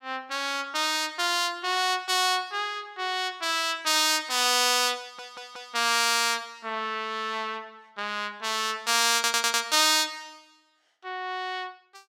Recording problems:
audio stuttering; at 5 s and at 9 s

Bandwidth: 16 kHz